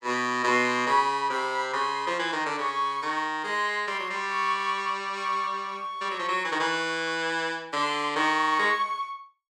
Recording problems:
none

